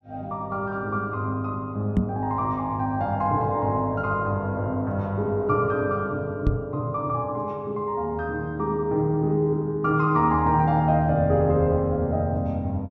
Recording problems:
microphone bump; at 2 s and at 6.5 s; peak +6 dB vs average level

